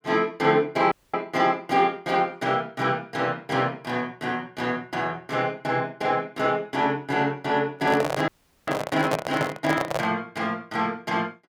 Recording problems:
audio cutting out; at 1 s and at 8.5 s
microphone handling noise; from 8 to 10 s; peak +4 dB vs average level

